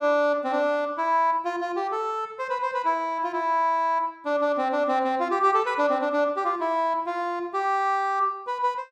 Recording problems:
none

